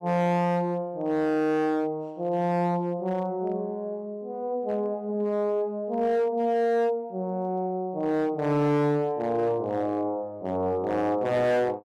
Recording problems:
distorted audio; hard clipping, signal-to-distortion ratio 11 dB

